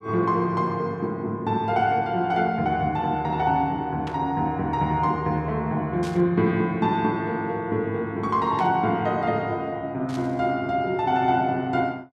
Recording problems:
static burst; 4 times, first at 4 s; peak -11 dB vs average level

